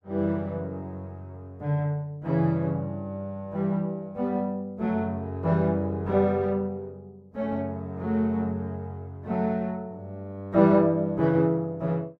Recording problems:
none

